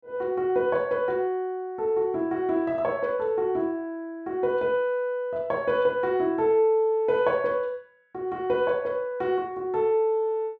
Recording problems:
none

